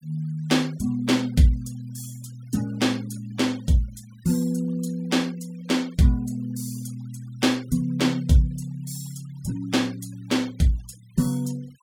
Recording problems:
noise reduction artefacts; signal-to-artefact ratio 25 dB

